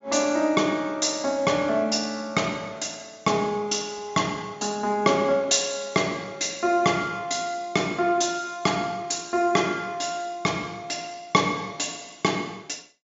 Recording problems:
low-pass filter; nothing above 7.4 kHz

